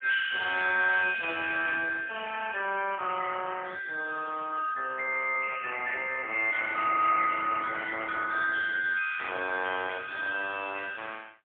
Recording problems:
telephone audio; 240 Hz to 3 kHz, AMR-NB, then MP3

